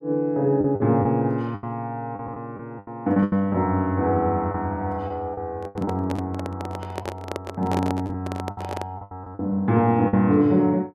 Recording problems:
lost packets; 9% of the sound replaced, filled with the last packet
handling noise; from 5.5 to 9 s; peak -1 dB vs average level

